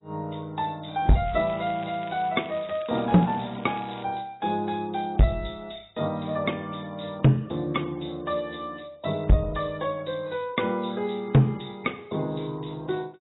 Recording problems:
lossy codec; AAC, log-spectral distance 6 dB, nothing above 3.9 kHz
distorted audio; hard clipping, signal-to-distortion ratio 8 dB
crackling; from 1.5 to 4 s; loose cable, SNR 21 dB

